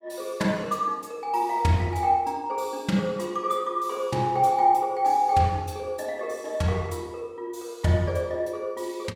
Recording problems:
none

